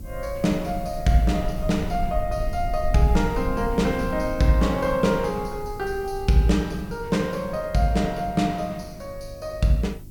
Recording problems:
hum; 50 Hz, harmonics up to 350 Hz, SNR 21 dB
background hiss; SNR 27 dB
rumble; below 64 Hz, SNR 12 dB

